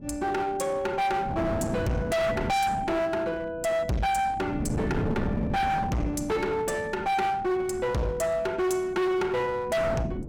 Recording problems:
distorted audio; hard clipping, uneven, signal-to-distortion ratio 5 dB
wind noise; below 320 Hz, SNR 6 dB

